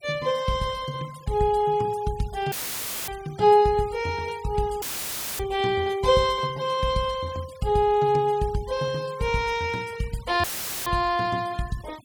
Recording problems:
noise reduction artefacts; signal-to-artefact ratio 22 dB
audio cutting out; at 2.5 s for 0.5 s, at 5 s for 0.5 s and at 10 s; filled with static

